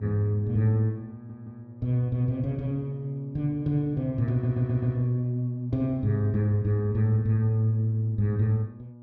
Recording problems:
hum; 60 Hz, harmonics up to 960 Hz, SNR 20 dB
audio stuttering; at 1 s and at 4.5 s

